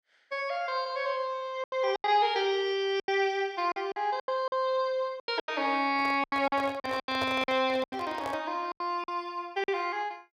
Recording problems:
lost packets; 11% of the sound replaced, filled with silence
microphone handling noise; from 6 to 8.5 s; peak -2 dB vs average level

